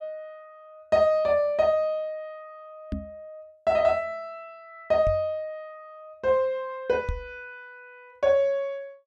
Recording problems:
knock on the microphone; at 3 s, at 5 s and at 7 s; peak -2 dB vs average level

